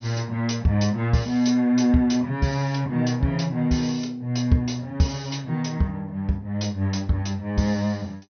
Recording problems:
low-pass filter; nothing above 6.2 kHz

